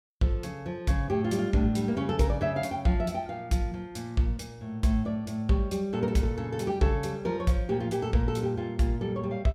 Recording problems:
none

